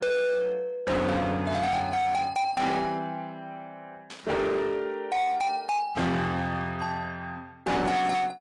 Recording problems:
lossy codec; AAC, log-spectral distance 2 dB, nothing above 10.4 kHz
distorted audio; hard clipping, signal-to-distortion ratio 7 dB
burst of static; at 1.5 s, at 4 s and at 6 s; peak -11 dB vs average level

